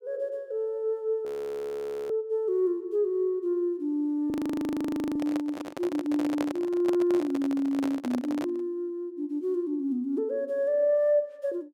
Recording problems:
frozen audio; at 1.5 s for 1 s and at 4.5 s for 1 s
microphone handling noise; from 4.5 to 8.5 s; peak 0 dB vs average level

